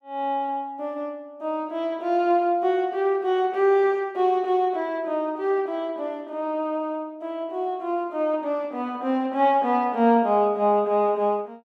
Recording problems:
none

